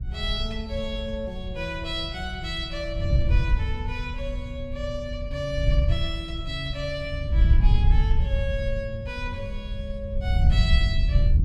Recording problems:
wind on the microphone; below 76 Hz, SNR -5 dB

